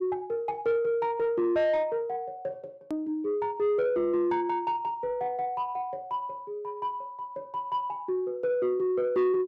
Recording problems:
distorted audio; soft clipping, signal-to-distortion ratio 12 dB
edit click; at 3 s

